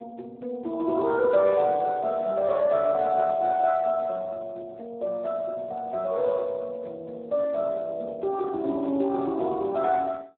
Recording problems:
phone line; 300 Hz to 2.2 kHz, Speex

